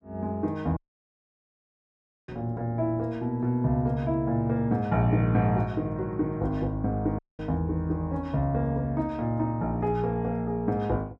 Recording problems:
audio cutting out; at 1 s for 1.5 s and at 7 s

